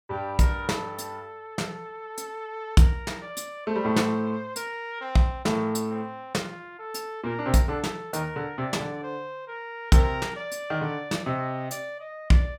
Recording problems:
none

